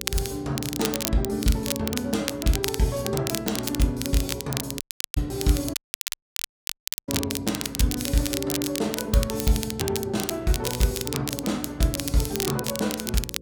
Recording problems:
hum; 60 Hz, harmonics up to 540 Hz, SNR 16 dB
crackling; vinyl, SNR 4 dB
audio cutting out; at 5 s and at 5.5 s for 1.5 s

